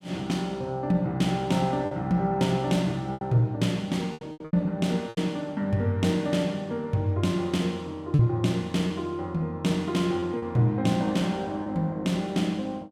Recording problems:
lost packets; 5% of the sound replaced, filled with repeated pitch periods

